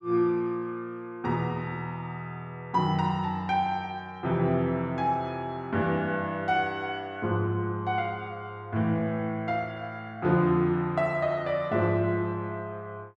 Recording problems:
none

